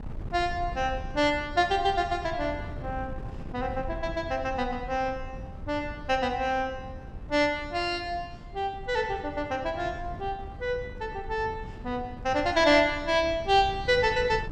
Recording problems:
wind noise; below 150 Hz, SNR 13 dB

